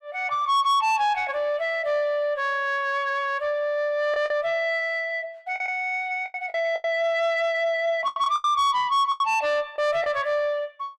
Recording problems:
distorted audio; soft clipping, signal-to-distortion ratio 12 dB
packet loss; 6% of the sound replaced, filled with the last packet

